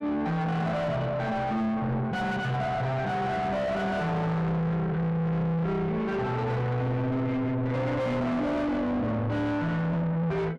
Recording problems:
distorted audio; soft clipping, signal-to-distortion ratio 6 dB

